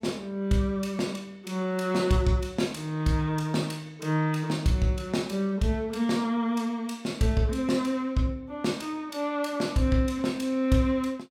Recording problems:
none

